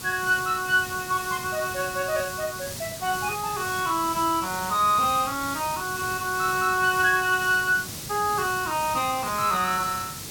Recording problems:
hiss; SNR 9 dB

